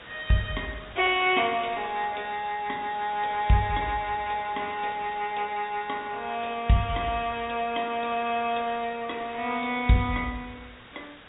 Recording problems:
low-pass filter; nothing above 3.4 kHz
lossy compression; MP2, log-spectral distance 9 dB
background hiss; SNR 18 dB

